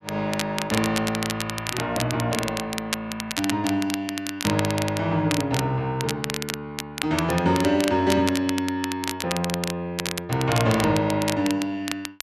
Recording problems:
crackle; vinyl, SNR 6 dB

